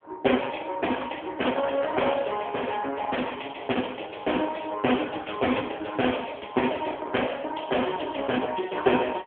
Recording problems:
telephone audio; 260 Hz to 3.4 kHz, AMR-NB

